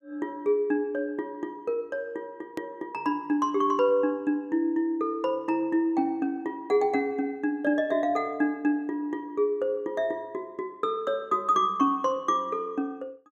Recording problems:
edit click; at 2.5 s

